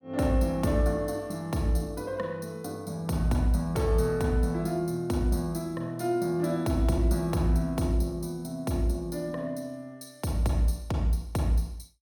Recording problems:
none

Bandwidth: 17.5 kHz